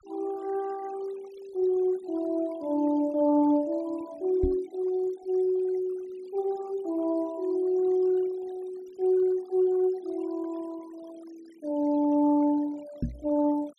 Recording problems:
denoising artefacts; signal-to-artefact ratio 25 dB
microphone thump; at 4.5 s and at 13 s; peak +2 dB vs average level

